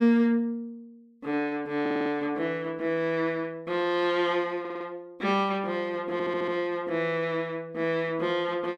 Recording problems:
stutter; at 2 s, at 4.5 s and at 6 s

